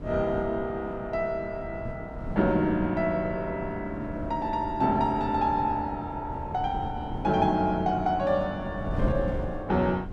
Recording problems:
wind on the microphone; below 230 Hz, SNR 10 dB

